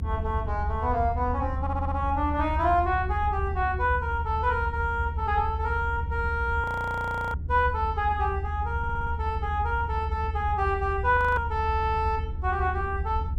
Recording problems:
rumble; below 80 Hz, strongest tone 76 Hz, SNR 4 dB
audio stuttering; at 1.5 s and at 9 s
frozen audio; at 6.5 s for 0.5 s and at 11 s

